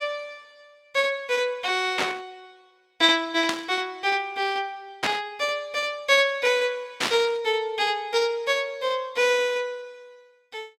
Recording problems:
static burst; 4 times, first at 2 s; peak +4 dB vs average level

